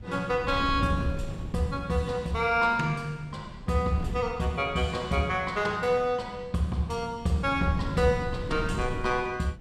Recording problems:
wind noise; below 170 Hz, SNR 11 dB

